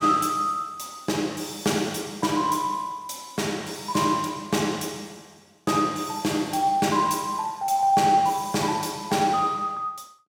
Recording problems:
none

